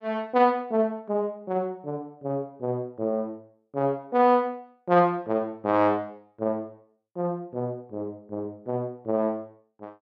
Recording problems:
none

